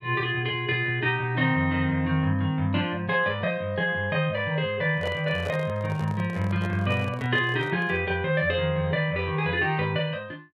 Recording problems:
handling noise; from 5 to 8 s; peak -6 dB vs average level

